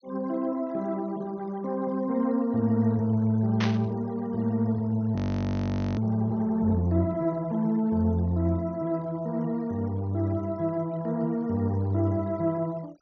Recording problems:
low-pass filter; nothing above 6.3 kHz
denoising artefacts; signal-to-artefact ratio 28 dB
burst of static; at 3.5 s; peak -1 dB vs average level
audio freezing; at 5 s for 1 s

